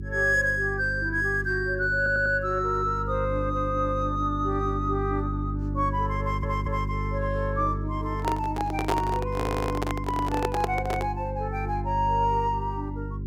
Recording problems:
hum; 50 Hz, harmonics up to 400 Hz, SNR 5 dB
stutter; at 2 s, at 6 s and at 9.5 s
handling noise; from 8 to 11 s; peak +3 dB vs average level

